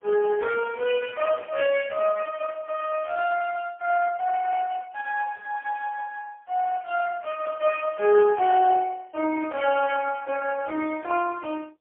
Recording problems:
phone line; 300 Hz to 3.2 kHz, AMR-NB, then MP3

